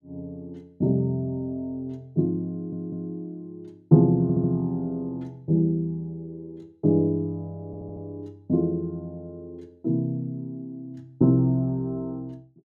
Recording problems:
audio stuttering; at 2.5 s, at 4 s and at 7.5 s

